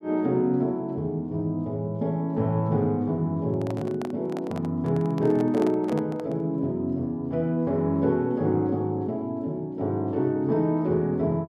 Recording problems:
microphone handling noise; from 3.5 to 6.5 s; peak -6 dB vs average level

